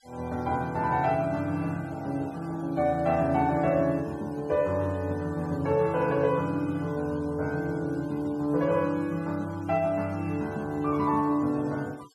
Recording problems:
noise reduction artefacts; signal-to-artefact ratio 25 dB

